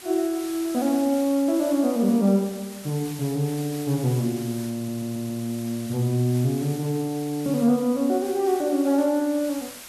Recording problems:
background hiss; slope 0 dB per octave, SNR 16 dB
audio stuttering; at 5 s

